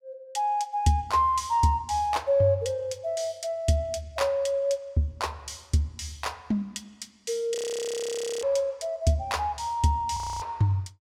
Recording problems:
frozen audio; at 7.5 s for 1 s and at 10 s

